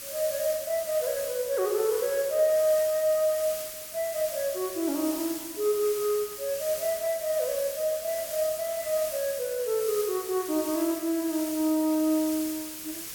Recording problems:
background hiss; SNR 8 dB

